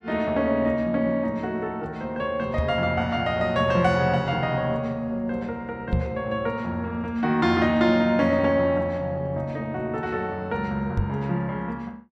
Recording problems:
microphone thump; at 2.5 s, at 6 s and at 11 s; peak +4 dB vs average level

